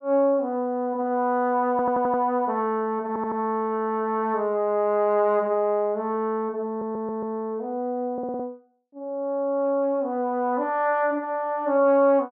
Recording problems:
low-pass filter; nothing above 8 kHz
stutter; 4 times, first at 1.5 s

